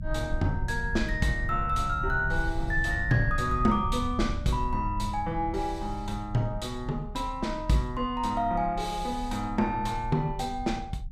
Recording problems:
rumble; below 86 Hz, SNR 8 dB

